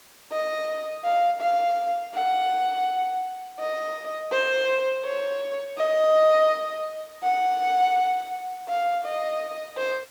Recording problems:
background hiss; slope -1 dB per octave, SNR 26 dB

